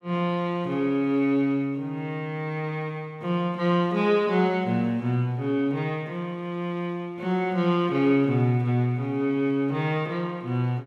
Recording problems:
none

